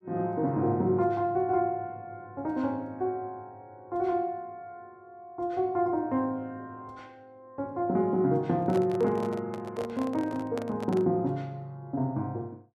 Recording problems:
microphone handling noise; from 8.5 to 11 s; peak -4 dB vs average level

